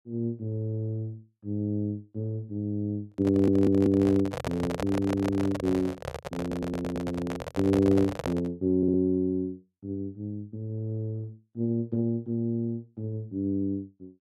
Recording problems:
microphone handling noise; from 3 to 8.5 s; peak 0 dB vs average level
audio stuttering; 4 times, first at 3.5 s

